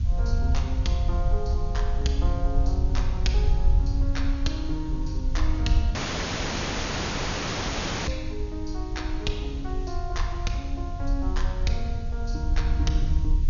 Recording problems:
treble cut off; nothing above 6.9 kHz
background hiss; slope +1 dB per octave, SNR 20 dB
low-frequency rumble; below 70 Hz, SNR -6 dB
audio cutting out; at 6 s for 2 s

